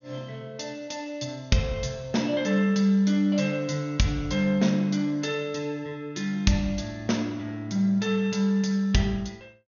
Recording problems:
treble missing; nothing above 6.6 kHz

